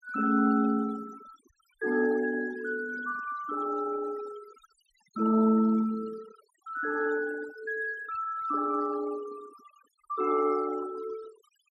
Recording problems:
denoising artefacts; signal-to-artefact ratio 18 dB

